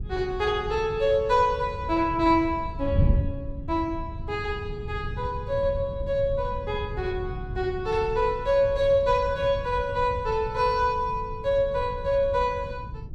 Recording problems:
wind noise; below 120 Hz, SNR 9 dB

